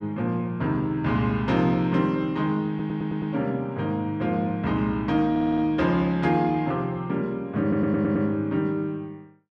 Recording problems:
stutter; at 2.5 s, at 5.5 s and at 7.5 s

